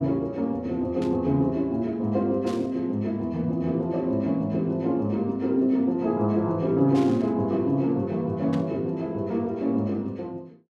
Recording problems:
burst of static; 4 times, first at 1 s; peak -11 dB vs average level

